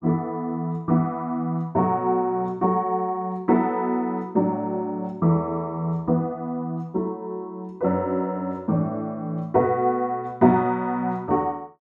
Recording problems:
none

